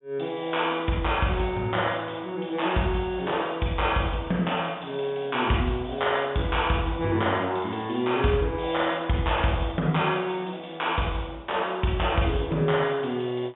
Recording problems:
treble cut off; nothing above 3.6 kHz

